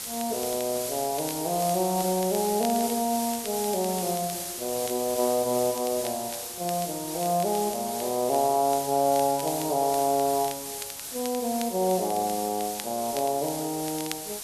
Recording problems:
background hiss; slope +1 dB per octave, SNR 6 dB
crackle; vinyl, SNR 18 dB

